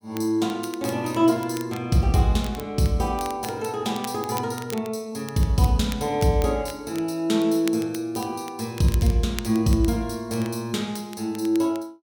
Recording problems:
crackle; vinyl, SNR 18 dB

